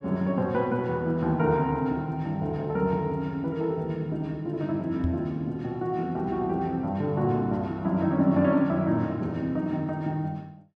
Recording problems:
microphone bump; at 5 s; peak +2 dB vs average level

